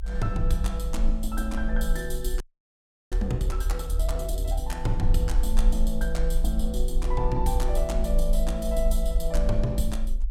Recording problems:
rumble; below 50 Hz, strongest tone 26 Hz, SNR -2 dB
audio freezing; at 2.5 s for 0.5 s

